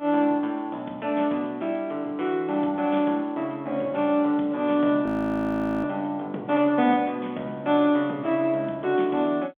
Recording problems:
telephone audio; 170 Hz to 3.5 kHz, G.711
audio freezing; at 5 s for 1 s

